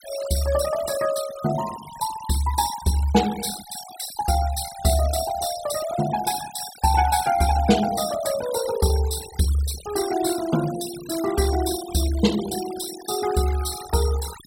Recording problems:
noise reduction artefacts; signal-to-artefact ratio 11 dB

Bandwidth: 16 kHz